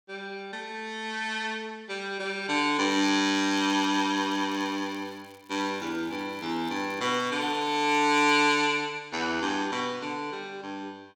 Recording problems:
crackle; from 3 to 8.5 s; loose cable, SNR 28 dB

